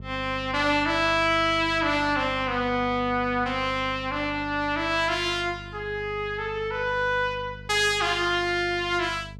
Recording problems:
mains hum; 50 Hz, harmonics up to 500 Hz, SNR 17 dB

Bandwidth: 16 kHz